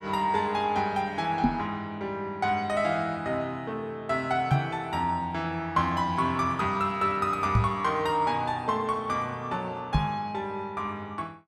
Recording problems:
microphone thump; 4 times, first at 1.5 s; peak +8 dB vs average level

